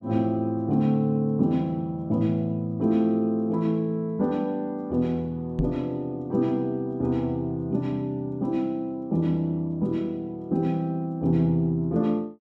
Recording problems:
microphone thump; at 5.5 s; peak +2 dB vs average level

